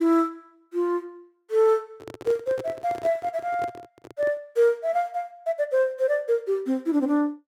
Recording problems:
microphone handling noise; from 2 to 4.5 s; peak -7 dB vs average level

